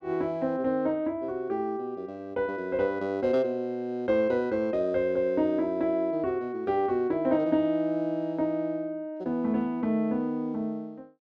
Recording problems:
none

